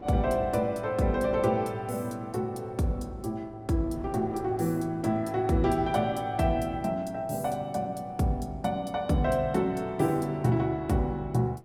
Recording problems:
wind on the microphone; below 520 Hz, SNR 21 dB

